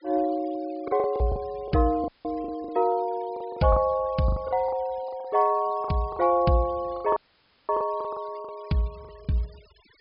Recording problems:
treble cut off; nothing above 5.5 kHz
denoising artefacts; signal-to-artefact ratio 27 dB
lost packets; 12% of the sound replaced, filled with the last packet
audio cutting out; at 2 s and at 7 s for 0.5 s

